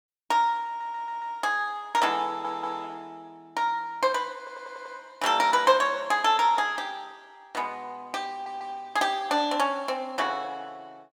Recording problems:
stutter; 4 times, first at 0.5 s

